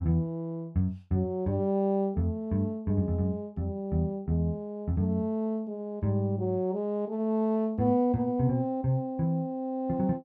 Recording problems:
none

